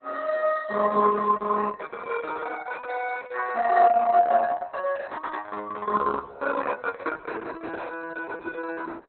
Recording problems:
codec artefacts; Opus, log-spectral distance 5 dB, nothing above 4.1 kHz

